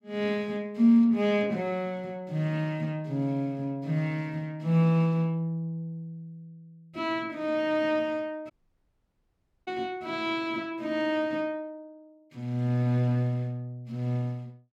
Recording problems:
dropout; at 8.5 s for 1 s

